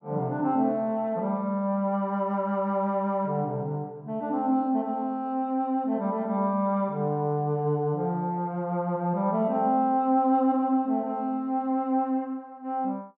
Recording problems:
none

